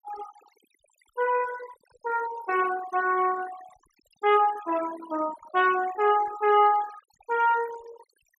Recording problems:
noise reduction artefacts; signal-to-artefact ratio 16 dB

